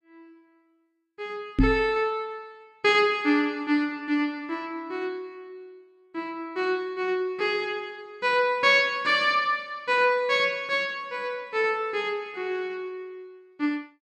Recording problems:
knock on the microphone; at 1.5 s; peak +8 dB vs average level

